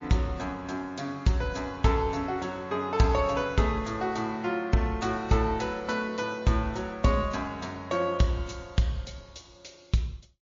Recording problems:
codec artefacts; MP3, log-spectral distance 3 dB, nothing above 6.5 kHz

